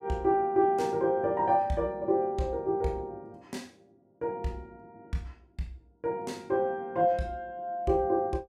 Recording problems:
none

